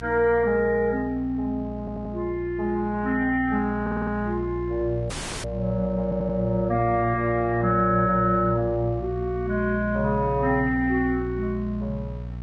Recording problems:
lossy codec; Vorbis, log-spectral distance 2 dB
electrical hum; 60 Hz, harmonics up to 660 Hz, SNR 11 dB
audio stuttering; at 2 s, at 4 s and at 6 s
dropout; at 5 s

